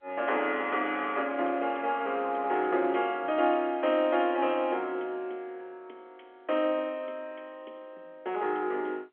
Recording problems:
phone line; 300 Hz to 3.3 kHz, G.711

